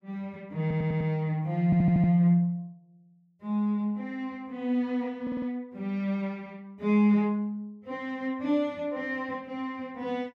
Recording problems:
stutter; at 0.5 s, at 1.5 s and at 5 s

